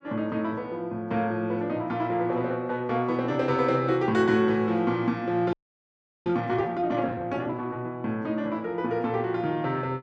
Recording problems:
frozen audio; at 5.5 s for 0.5 s

